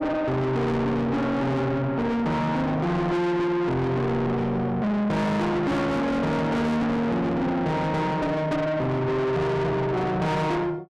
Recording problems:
distorted audio; soft clipping, signal-to-distortion ratio 6 dB

